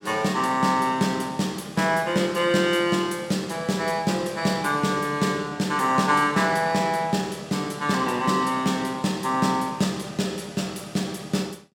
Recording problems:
none

